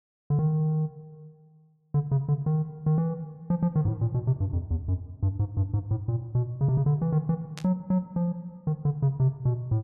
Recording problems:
burst of static; at 7.5 s; peak -9 dB vs average level

